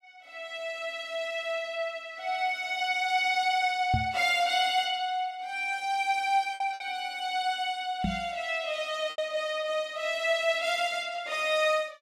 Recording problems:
lost packets; 1.9% of the sound replaced, filled with repeated pitch periods
knock on the microphone; at 4 s and at 8 s; peak +3 dB vs average level

